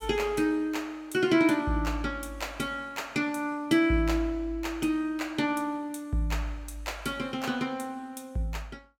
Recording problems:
none

